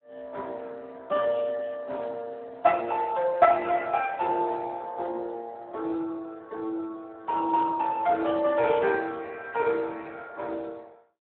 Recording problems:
phone line; 280 Hz to 2.6 kHz, Speex

